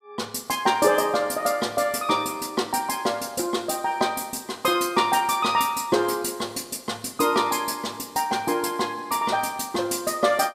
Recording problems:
none

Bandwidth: 15.5 kHz